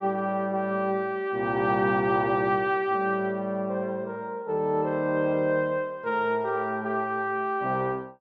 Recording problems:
none

